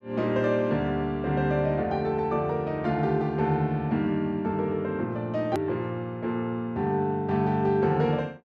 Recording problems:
click at an edit; at 5.5 s

